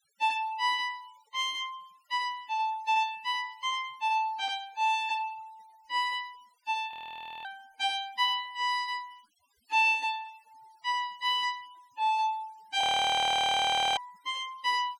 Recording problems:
noise reduction artefacts; signal-to-artefact ratio 26 dB
audio freezing; at 7 s for 0.5 s and at 13 s for 1 s

